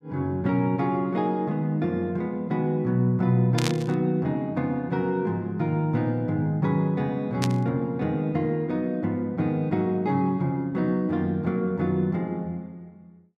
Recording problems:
burst of static; at 3.5 s and at 7.5 s; peak +1 dB vs average level

